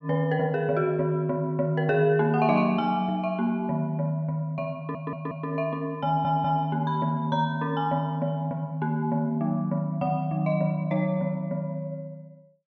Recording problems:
stutter; at 5 s and at 6 s

